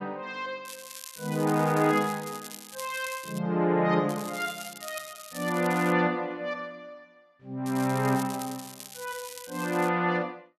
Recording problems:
crackle; from 0.5 to 3.5 s, from 4 to 6 s and from 7.5 to 10 s; loose cable, SNR 14 dB

